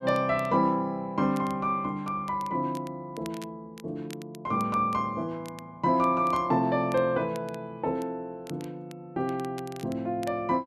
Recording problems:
crackle; vinyl, SNR 23 dB

